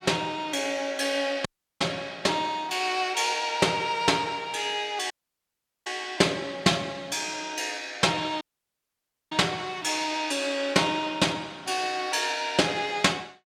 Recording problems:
audio cutting out; at 1.5 s, at 5 s for 1 s and at 8.5 s for 1 s

